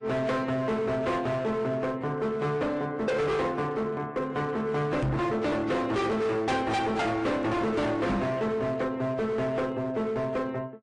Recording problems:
lossy codec; AAC, then MP3, log-spectral distance 2 dB, nothing above 8.5 kHz
distortion; hard clipping, signal-to-distortion ratio 7 dB
knock on the microphone; at 5 s and at 8 s; peak +3 dB vs average level

